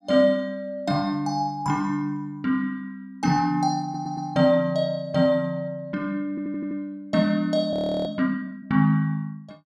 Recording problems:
stutter; at 4 s and at 6.5 s
frozen audio; at 7.5 s

